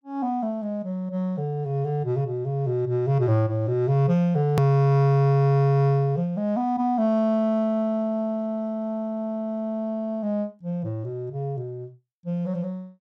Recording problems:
hard cut with a click; at 4.5 s

